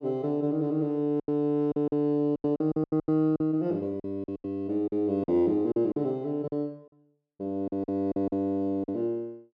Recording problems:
lost packets; 12% of the sound replaced, filled with silence

